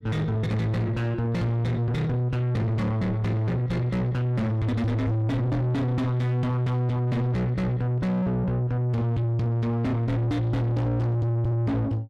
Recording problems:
distorted audio; soft clipping, signal-to-distortion ratio 6 dB

